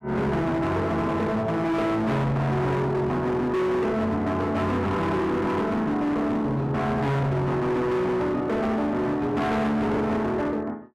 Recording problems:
distorted audio; hard clipping, signal-to-distortion ratio 7 dB

